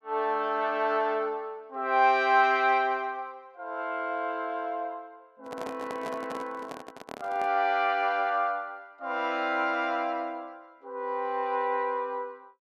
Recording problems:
handling noise; from 5.5 to 7.5 s; peak -7 dB vs average level

